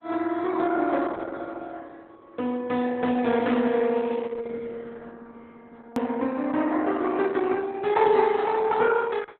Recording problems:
lossy compression; Opus, log-spectral distance 4 dB, nothing above 13.1 kHz
hard cut with a click; at 6 s

